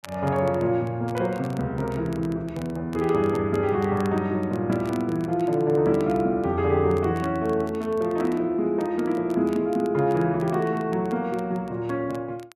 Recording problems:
crackle; vinyl, SNR 25 dB

